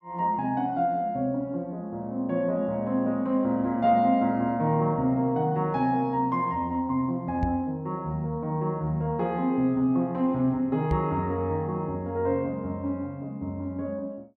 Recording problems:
microphone bump; at 7.5 s and at 11 s; peak +2 dB vs average level

